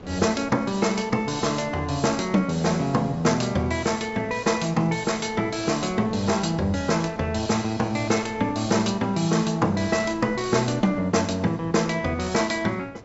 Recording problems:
low-pass filter; nothing above 8 kHz
wind noise; below 560 Hz, SNR 21 dB

